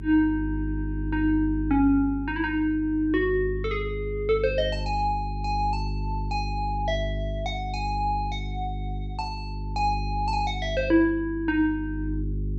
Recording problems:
electrical hum; 50 Hz, harmonics up to 400 Hz, SNR 6 dB

